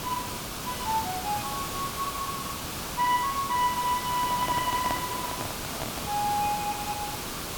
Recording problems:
background hiss; slope -3 dB per octave, SNR 3 dB
handling noise; from 4 to 6 s; peak +2 dB vs average level

